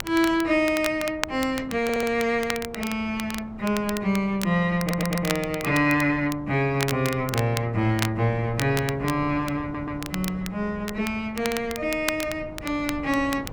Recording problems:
wind noise; below 400 Hz, SNR 17 dB
crackling; vinyl, SNR 11 dB
audio stuttering; at 2 s, at 5 s and at 9.5 s

